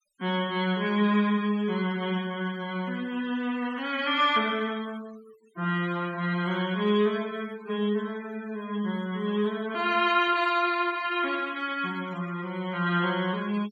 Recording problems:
denoising artefacts; signal-to-artefact ratio 20 dB

